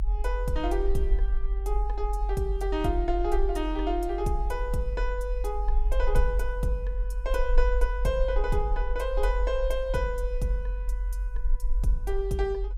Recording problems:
low-frequency rumble; below 46 Hz, SNR 0 dB

